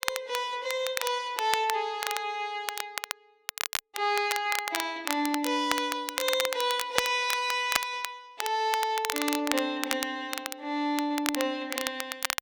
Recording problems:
crackle; vinyl, SNR 4 dB

